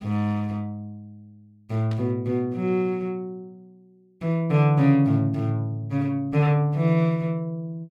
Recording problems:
static burst; at 2 s; peak -15 dB vs average level

